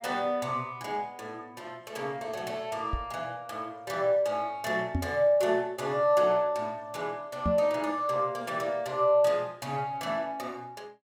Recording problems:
microphone thump; at 3 s, at 5 s and at 7.5 s; peak +3 dB vs average level

